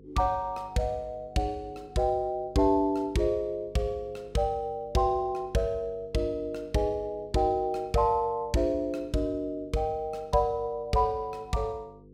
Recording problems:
hum; 50 Hz, harmonics up to 500 Hz, SNR 23 dB

